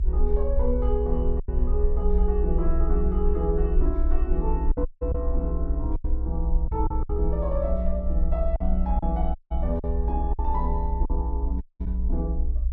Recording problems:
rumble; below 60 Hz, strongest tone 22 Hz, SNR -3 dB
packet loss; 5% of the sound replaced, filled with silence
dropout; at 5 s, at 9.5 s and at 12 s

